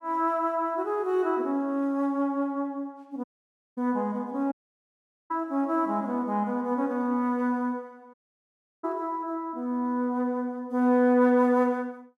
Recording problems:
audio cutting out; at 3 s for 0.5 s, at 4.5 s for 1 s and at 8 s for 0.5 s

